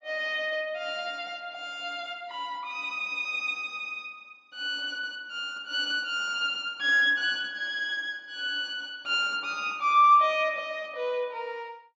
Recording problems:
treble missing; nothing above 8 kHz

